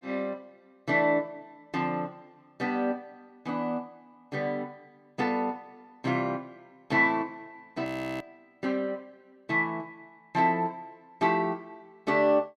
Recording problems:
frozen audio; at 8 s

